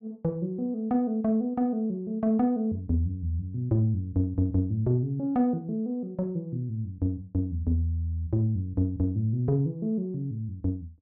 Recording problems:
none

